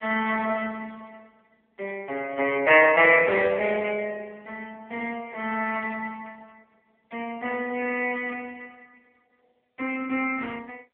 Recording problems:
telephone audio; 340 Hz to 3.5 kHz, AMR-NB

